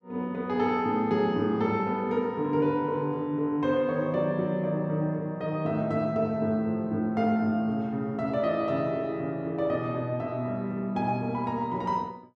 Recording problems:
none

